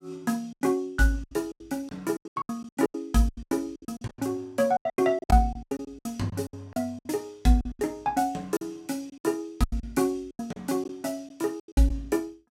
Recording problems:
lost packets; 18% of the sound replaced, filled with silence

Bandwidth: 16 kHz